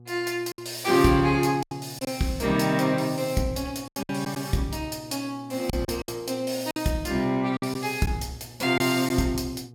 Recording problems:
hum; 60 Hz, harmonics up to 840 Hz, SNR 21 dB
packet loss; 6% of the sound replaced, filled with silence

